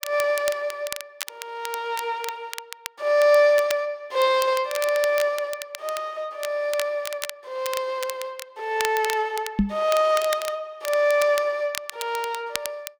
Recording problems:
crackle; vinyl, SNR 11 dB
microphone bump; at 9.5 s; peak +7 dB vs average level

